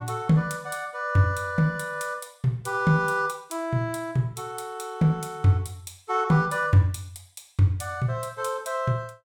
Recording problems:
none

